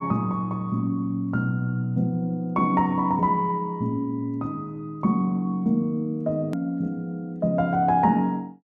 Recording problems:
hard cut with a click; at 6.5 s

